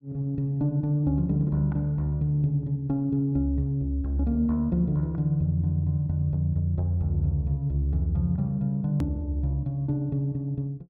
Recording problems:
click at an edit; at 9 s

